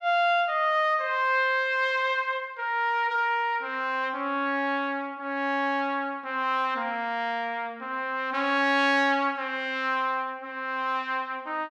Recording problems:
none

